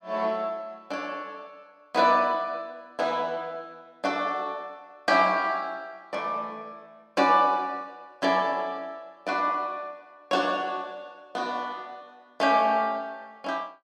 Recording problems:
none

